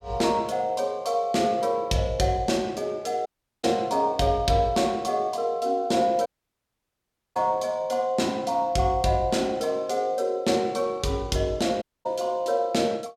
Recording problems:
dropout; at 3.5 s, at 6.5 s for 1 s and at 12 s

